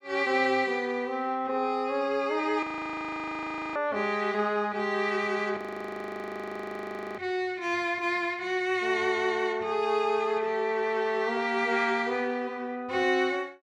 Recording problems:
audio freezing; at 2.5 s for 1 s and at 5.5 s for 1.5 s

